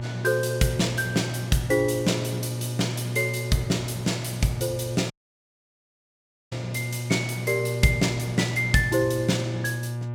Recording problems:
electrical hum; 60 Hz, harmonics up to 960 Hz, SNR 6 dB
audio cutting out; at 5 s for 1.5 s

